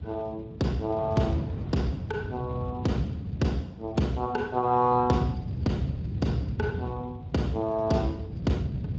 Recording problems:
lossy compression; Speex, log-spectral distance 2 dB
low-frequency rumble; below 170 Hz, SNR 6 dB
wind on the microphone; below 720 Hz, SNR 22 dB

